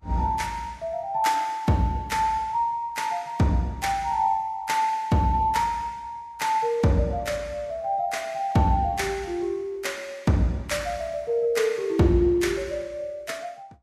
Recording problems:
lossy codec; Vorbis, log-spectral distance 2 dB, nothing above 13.8 kHz

